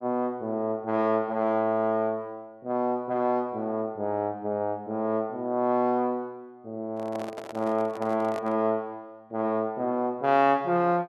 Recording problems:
handling noise; from 7 to 8.5 s; peak -7 dB vs average level

